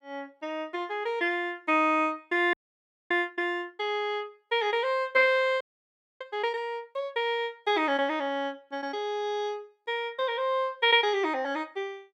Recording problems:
audio freezing; at 2.5 s for 0.5 s and at 5.5 s for 0.5 s

